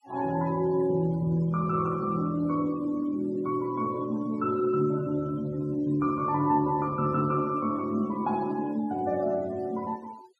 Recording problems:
denoising artefacts; signal-to-artefact ratio 25 dB

